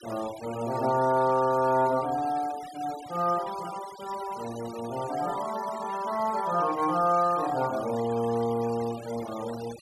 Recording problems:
noise reduction artefacts; signal-to-artefact ratio 17 dB

